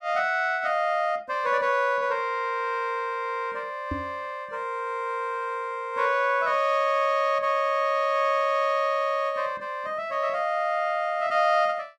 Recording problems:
knock on the microphone; at 4 s; peak -3 dB vs average level

